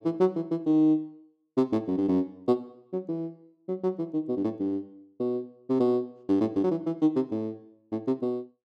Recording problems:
none

